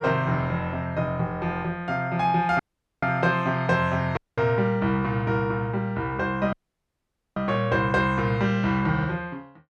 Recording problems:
dropout; at 2.5 s, at 4 s and at 6.5 s for 1 s

